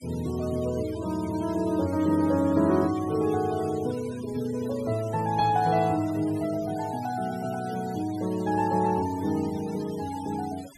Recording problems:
denoising artefacts; signal-to-artefact ratio 19 dB

